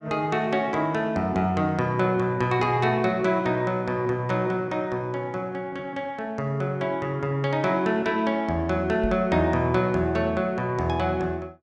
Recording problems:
microphone thump; at 9 s; peak -2 dB vs average level

